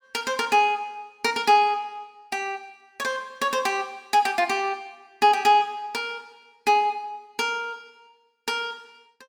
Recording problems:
none

